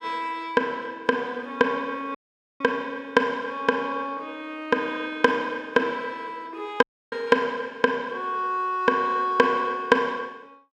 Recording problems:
audio cutting out; at 2 s and at 7 s

